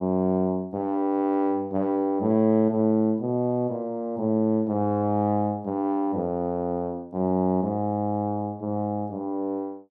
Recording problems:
none

